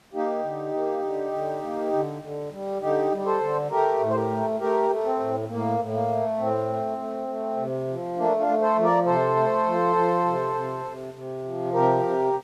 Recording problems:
background hiss; slope -4 dB per octave, SNR 28 dB

